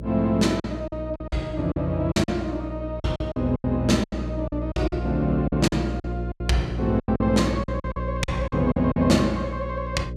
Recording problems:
hum; 60 Hz, harmonics up to 600 Hz, SNR 7 dB
lost packets; 13% of the sound replaced, filled with silence

